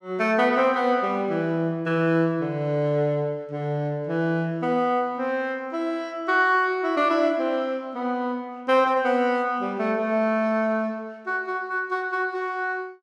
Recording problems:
none

